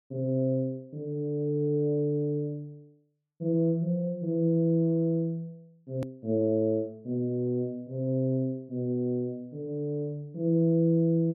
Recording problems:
click at an edit; at 6 s

